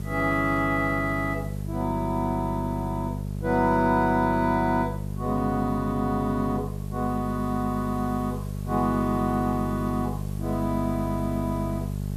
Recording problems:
hum; 50 Hz, harmonics up to 650 Hz, SNR 6 dB
hiss; slope -2 dB per octave, SNR 24 dB

